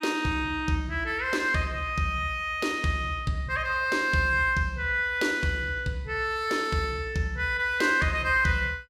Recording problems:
none

